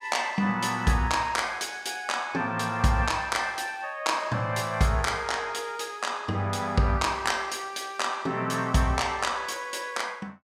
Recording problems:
none

